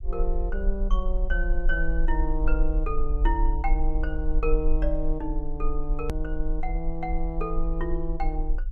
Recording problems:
rumble; below 40 Hz, strongest tone 24 Hz, SNR -2 dB
edit click; at 6 s

